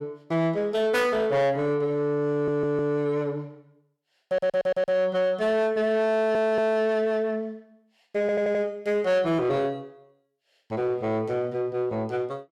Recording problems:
distorted audio; soft clipping, signal-to-distortion ratio 11 dB
audio stuttering; 4 times, first at 2.5 s

